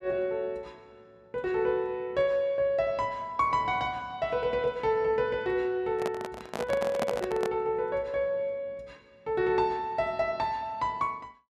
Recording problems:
microphone handling noise; from 6 to 7.5 s; peak +2 dB vs average level

